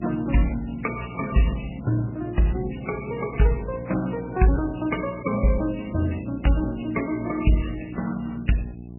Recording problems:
lossy compression; MP3, then MP3, log-spectral distance 6 dB, nothing above 2.6 kHz
hum; 60 Hz, harmonics up to 780 Hz, SNR 13 dB

